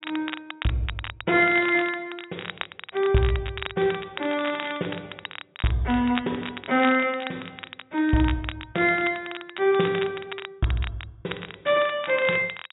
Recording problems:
treble cut off; nothing above 3.8 kHz
crackling; vinyl, SNR 12 dB

